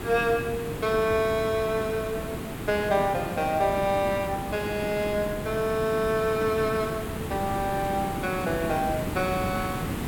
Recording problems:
background hiss; slope -6 dB per octave, SNR 6 dB

